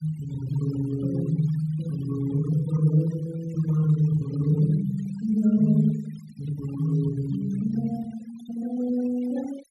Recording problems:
denoising artefacts; signal-to-artefact ratio 20 dB

